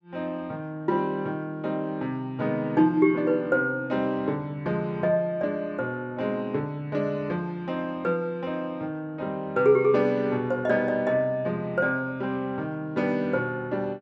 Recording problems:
none

